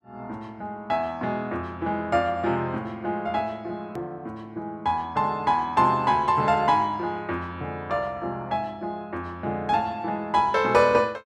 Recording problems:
edit click; at 4 s

